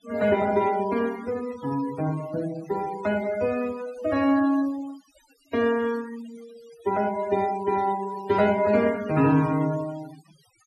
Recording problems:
denoising artefacts; signal-to-artefact ratio 18 dB

